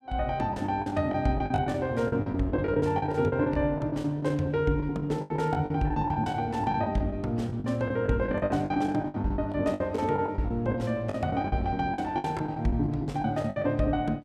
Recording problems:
packet loss; 16% of the sound replaced, filled with the last packet

